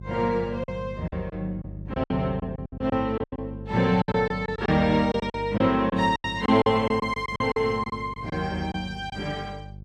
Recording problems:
hum; 50 Hz, harmonics up to 400 Hz, SNR 14 dB
packet loss; 12% of the sound replaced, filled with silence

